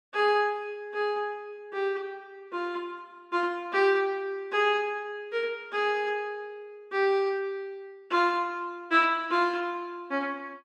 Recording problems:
none

